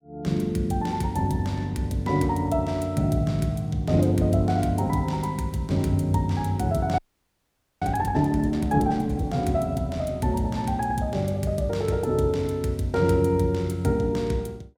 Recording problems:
frozen audio; at 7 s for 1 s

